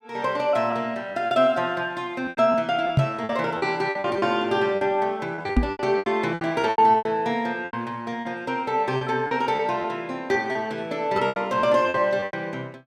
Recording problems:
lost packets; 13% of the sound replaced, filled with repeated pitch periods
microphone bump; at 3 s and at 5.5 s; peak +8 dB vs average level

